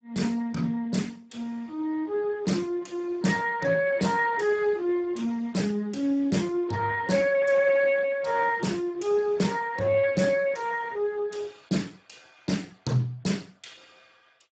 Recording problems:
lossy codec; Speex, log-spectral distance 4 dB, nothing above 7.8 kHz

